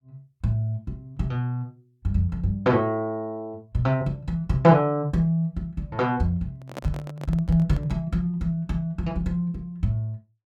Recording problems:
handling noise; from 6.5 to 8 s; peak -5 dB vs average level

